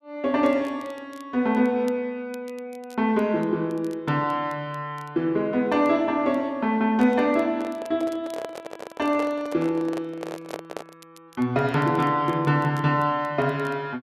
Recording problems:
crackling; vinyl, SNR 30 dB
handling noise; from 7.5 to 11 s; peak -5 dB vs average level

